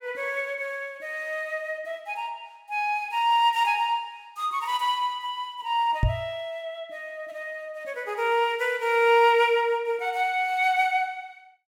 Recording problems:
microphone thump; at 6 s; peak +5 dB vs average level

